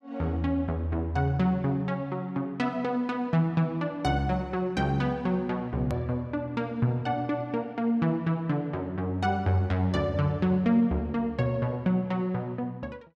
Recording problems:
click at an edit; at 6 s

